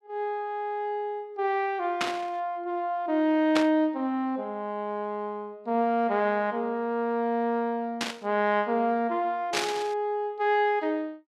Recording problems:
burst of static; 4 times, first at 2 s; peak +4 dB vs average level

